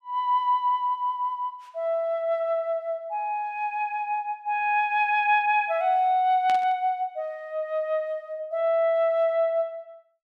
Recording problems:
static burst; at 6.5 s; peak -8 dB vs average level

